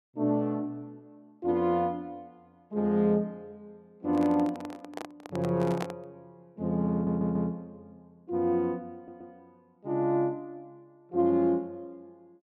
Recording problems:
microphone handling noise; from 4 to 6 s; peak -1 dB vs average level
audio stuttering; at 7 s and at 9 s

